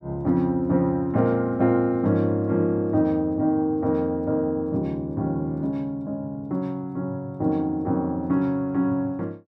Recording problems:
none

